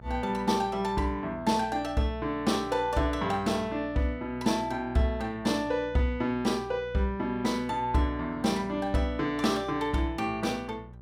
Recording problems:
hum; 60 Hz, harmonics up to 780 Hz, SNR 19 dB

